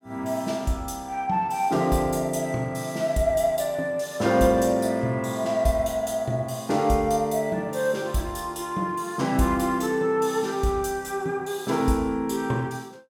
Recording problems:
none

